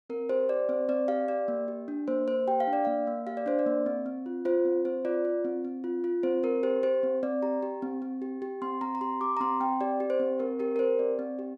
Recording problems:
none

